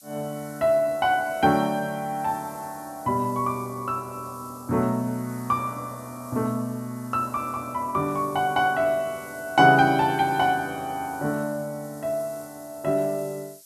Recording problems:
background hiss; SNR 21 dB

